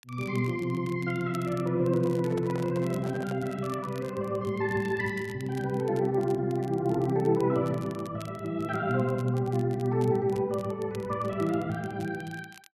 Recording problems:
crackling; vinyl, SNR 24 dB
handling noise; from 2 to 3.5 s; peak -8 dB vs average level

